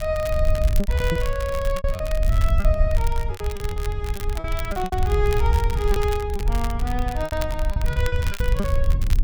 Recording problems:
wind noise; below 72 Hz, SNR -3 dB
crackle; vinyl, SNR 11 dB
lost packets; 12% of the sound replaced, filled with repeated pitch periods

